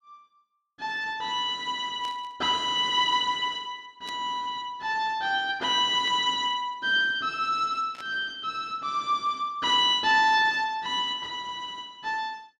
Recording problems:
burst of static; 4 times, first at 2 s; peak -12 dB vs average level

